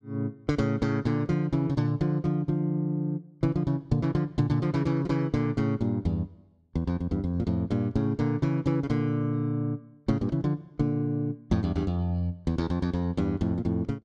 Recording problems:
none

